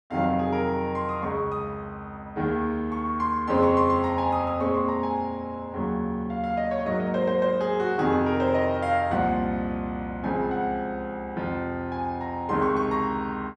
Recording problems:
none

